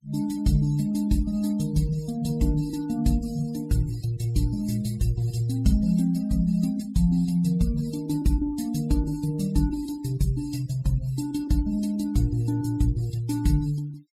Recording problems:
denoising artefacts; signal-to-artefact ratio 22 dB

